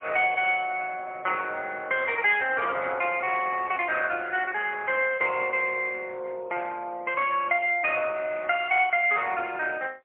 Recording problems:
phone line; 390 Hz to 3.3 kHz, AMR-NB, then MP3

